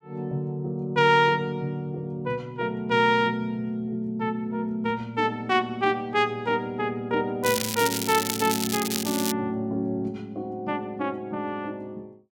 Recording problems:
crackle; from 7.5 to 9.5 s; loose cable, SNR 3 dB

